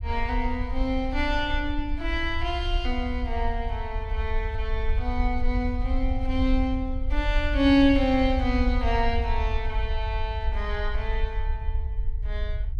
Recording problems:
rumble; below 62 Hz, SNR 3 dB

